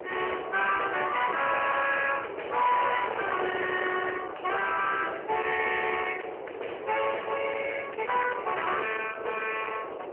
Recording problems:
telephone audio; 340 Hz to 3.1 kHz, AMR-NB
distortion; hard clipping, uneven, signal-to-distortion ratio 9 dB
wind on the microphone; below 1.5 kHz, SNR 9 dB

